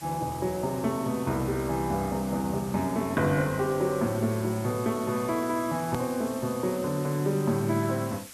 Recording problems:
hiss; slope +1 dB per octave, SNR 16 dB
click at an edit; at 6 s

